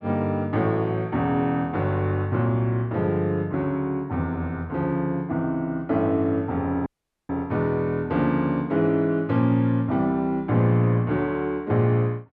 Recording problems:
audio cutting out; at 7 s

